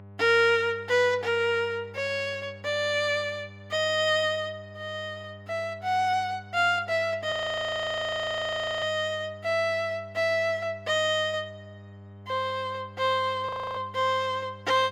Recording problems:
hum; 50 Hz, harmonics up to 1.3 kHz, SNR 20 dB
audio freezing; at 7.5 s for 1.5 s and at 13 s

